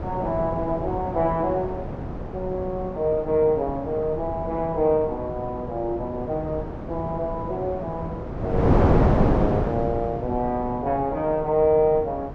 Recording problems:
wind noise; below 480 Hz, SNR 3 dB

